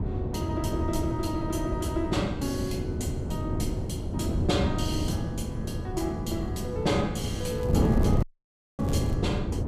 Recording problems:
wind noise; below 250 Hz, SNR -2 dB
crackle; from 7.5 to 9 s; loose cable, SNR 21 dB
audio cutting out; at 8 s for 0.5 s

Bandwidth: 15 kHz